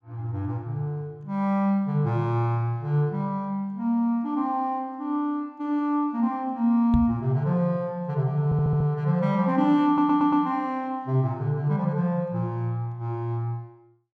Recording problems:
microphone bump; at 7 s; peak +4 dB vs average level
stutter; at 8.5 s and at 10 s

